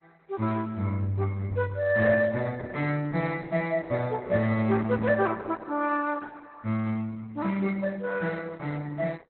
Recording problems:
lossy compression; Opus, log-spectral distance 3 dB, nothing above 4.1 kHz

